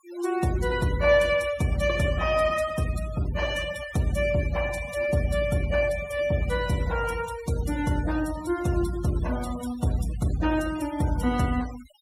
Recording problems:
denoising artefacts; signal-to-artefact ratio 16 dB

